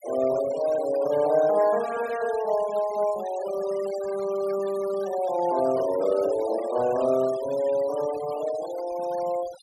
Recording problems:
noise reduction artefacts; signal-to-artefact ratio 18 dB

